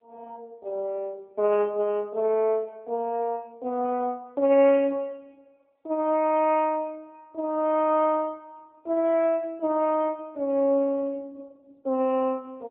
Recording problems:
telephone audio; 220 Hz to 3.1 kHz, AMR-NB

